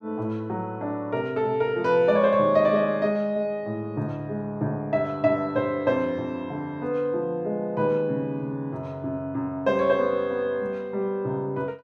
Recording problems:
none

